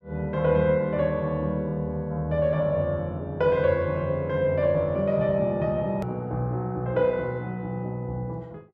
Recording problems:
click at an edit; at 6 s

